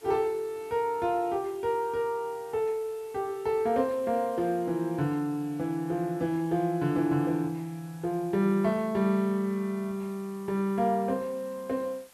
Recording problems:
background hiss; slope -1 dB per octave, SNR 25 dB

